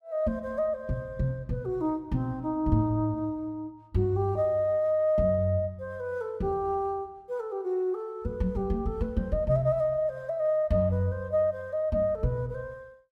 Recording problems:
none

